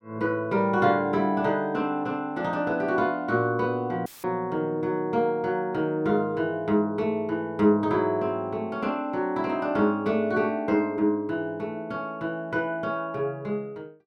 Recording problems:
dropout; at 4 s; filled with static

